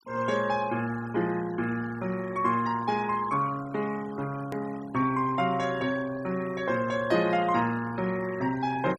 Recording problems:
noise reduction artefacts; signal-to-artefact ratio 18 dB
edit click; at 4.5 s

